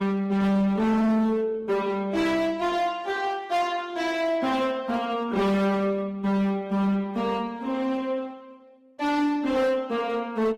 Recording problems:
codec artefacts; Opus, log-spectral distance 2 dB, nothing above 18.9 kHz
distorted audio; hard clipping, signal-to-distortion ratio 6 dB

